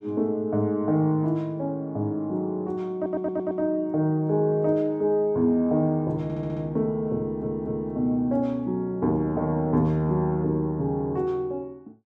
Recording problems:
stutter; at 3 s, at 6 s and at 7 s

